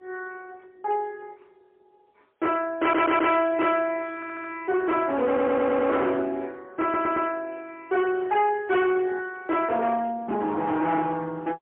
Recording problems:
phone line; 620 Hz to 3.3 kHz, AMR-NB, then MP3
distorted audio; hard clipping, signal-to-distortion ratio 8 dB
stutter; 4 times, first at 3 s

